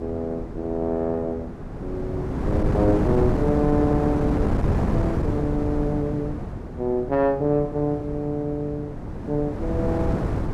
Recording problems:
wind on the microphone; below 350 Hz, SNR 2 dB

